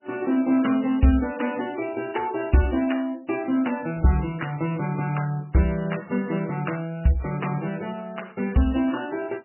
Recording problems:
codec artefacts; MP3, log-spectral distance 5 dB, nothing above 2.9 kHz

